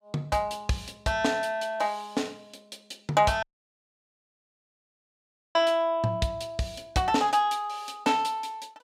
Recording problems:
dropout; at 3.5 s for 2 s

